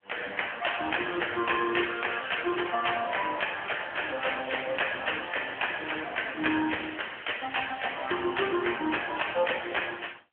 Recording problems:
phone line; 280 Hz to 3.2 kHz, AMR-NB

